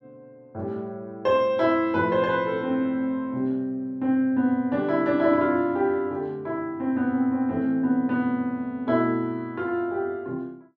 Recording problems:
none

